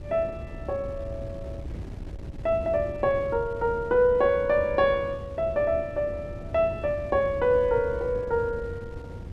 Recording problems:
wind noise; below 170 Hz, SNR 13 dB

